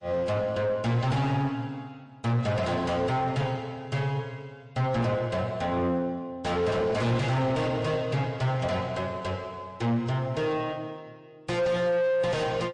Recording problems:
lossy compression; MP3, log-spectral distance 2 dB, nothing above 8.7 kHz
distorted audio; soft clipping, signal-to-distortion ratio 6 dB

